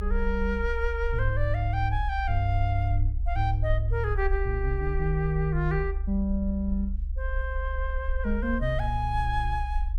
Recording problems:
low-frequency rumble; below 64 Hz, SNR 2 dB

